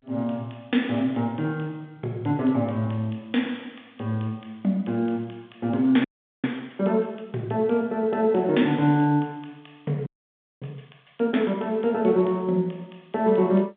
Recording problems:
phone line; 170 Hz to 3.5 kHz, G.711
frozen audio; at 6 s and at 10 s for 0.5 s

